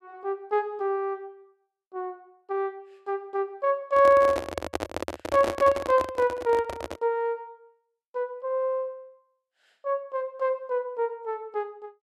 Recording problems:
handling noise; from 4 to 7 s; peak +2 dB vs average level

